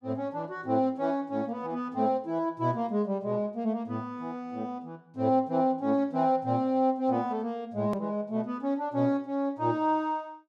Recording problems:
click at an edit; at 8 s

